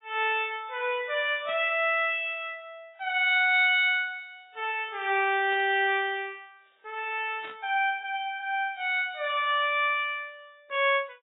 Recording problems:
codec artefacts; AAC, log-spectral distance 3 dB, nothing above 3.1 kHz
static burst; at 1.5 s, at 5.5 s and at 7.5 s; peak -15 dB vs average level

